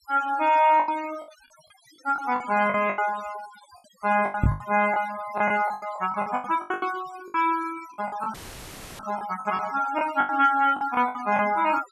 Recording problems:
denoising artefacts; signal-to-artefact ratio 16 dB
packet loss; 15% of the sound replaced, filled with the last packet
microphone thump; at 4.5 s; peak +7 dB vs average level
dropout; at 8.5 s for 0.5 s; filled with static

